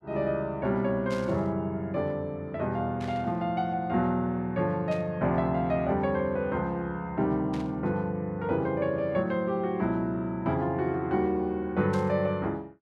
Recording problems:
static burst; 5 times, first at 1 s; peak -10 dB vs average level

